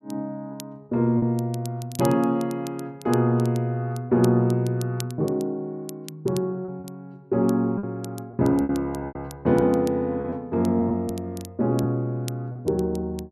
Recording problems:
crackling; vinyl, SNR 21 dB
lost packets; 4% of the sound replaced, filled with repeated pitch periods

